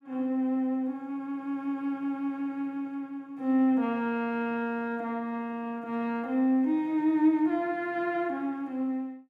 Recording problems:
none

